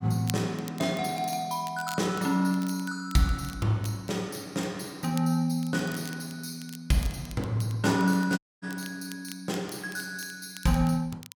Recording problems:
crackling; vinyl, SNR 18 dB
dropout; at 8.5 s

